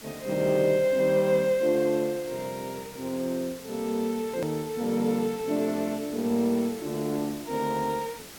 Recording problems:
hiss; slope -2 dB per octave, SNR 16 dB
edit click; at 4.5 s

